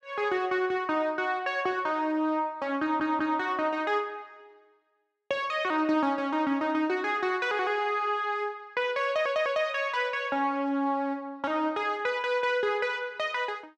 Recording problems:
stutter; at 3 s and at 9 s

